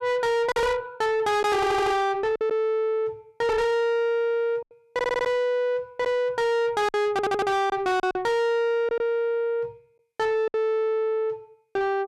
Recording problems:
distortion; soft clipping, signal-to-distortion ratio 6 dB
packet loss; 4% of the sound replaced, filled with silence
audio stuttering; at 1.5 s, at 5 s and at 7 s

